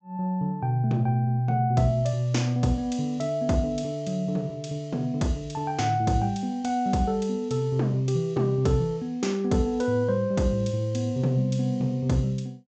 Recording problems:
treble missing; nothing above 8 kHz

